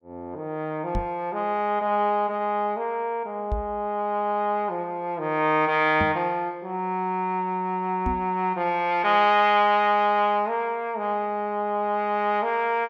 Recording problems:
knock on the microphone; 4 times, first at 1 s; peak -1 dB vs average level

